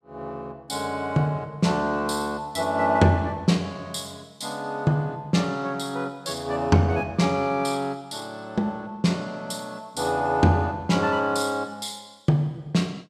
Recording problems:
none

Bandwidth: 14.5 kHz